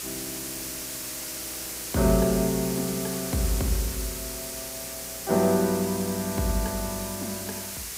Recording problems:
hum; 60 Hz, harmonics up to 480 Hz, SNR 25 dB
background hiss; slope +1 dB per octave, SNR 6 dB

